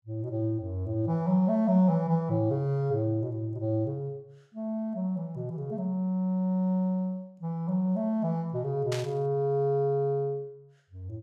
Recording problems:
burst of static; at 9 s; peak -4 dB vs average level

